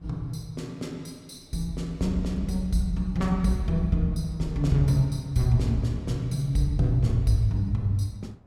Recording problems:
wind noise; below 270 Hz, SNR 27 dB

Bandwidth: 16 kHz